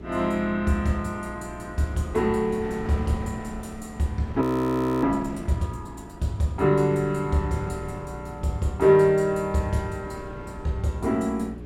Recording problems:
electrical hum; 60 Hz, harmonics up to 420 Hz, SNR 17 dB
wind noise; below 490 Hz, SNR 17 dB
audio freezing; at 4.5 s for 0.5 s

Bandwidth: 16.5 kHz